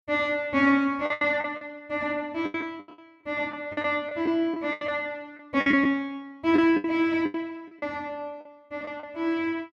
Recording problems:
packet loss; 12% of the sound replaced, filled with the last packet

